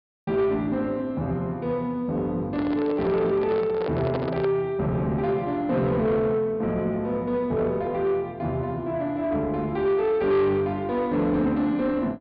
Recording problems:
treble cut off; nothing above 5 kHz
distortion; soft clipping, signal-to-distortion ratio 12 dB
microphone handling noise; from 2.5 to 4.5 s; peak -1 dB vs average level

